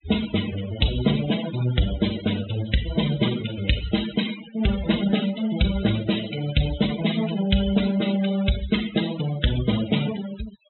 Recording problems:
treble missing; nothing above 4 kHz
denoising artefacts; signal-to-artefact ratio 10 dB

